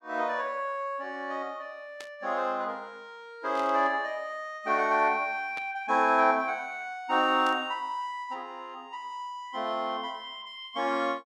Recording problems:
static burst; 4 times, first at 2 s; peak -10 dB vs average level

